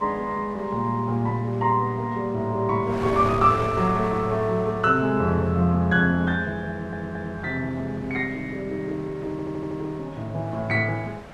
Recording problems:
wind noise; below 1.4 kHz, SNR 15 dB
stutter; at 6.5 s and at 9.5 s

